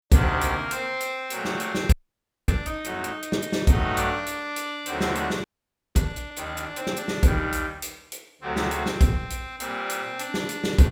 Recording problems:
audio freezing; at 2 s for 0.5 s and at 5.5 s for 0.5 s

